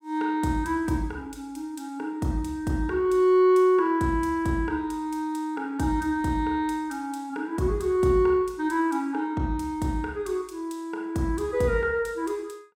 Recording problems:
none

